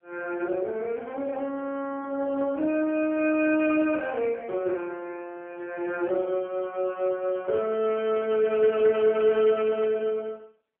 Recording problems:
phone line; 280 Hz to 3 kHz, AMR-NB

